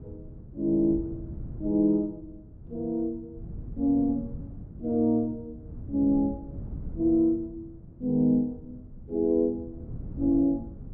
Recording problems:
wind on the microphone; below 160 Hz, SNR 16 dB

